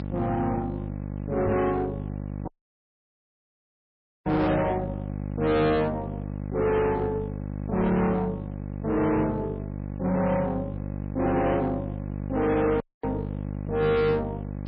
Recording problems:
lossy compression; MP3, log-spectral distance 2 dB, nothing above 4.6 kHz
distortion; soft clipping, signal-to-distortion ratio 7 dB
electrical hum; 50 Hz, harmonics up to 1.1 kHz, SNR 7 dB
microphone bump; at 1.5 s; peak +3 dB vs average level
audio cutting out; at 2.5 s for 2 s and at 13 s

